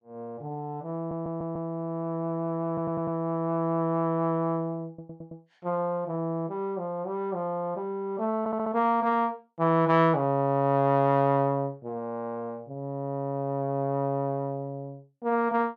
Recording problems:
audio stuttering; 4 times, first at 1 s

